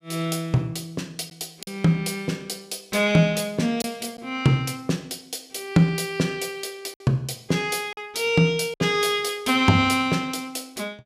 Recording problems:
lost packets; 2% of the sound replaced, filled with silence

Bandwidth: 15.5 kHz